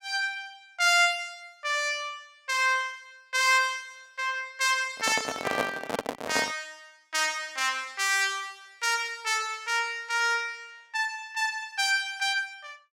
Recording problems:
microphone handling noise; from 5 to 6.5 s; peak +2 dB vs average level

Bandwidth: 16.5 kHz